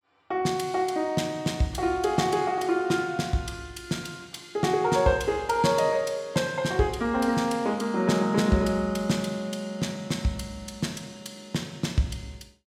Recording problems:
none

